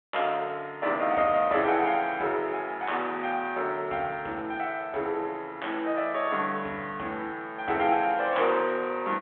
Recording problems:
phone line; 280 Hz to 3.4 kHz, G.726

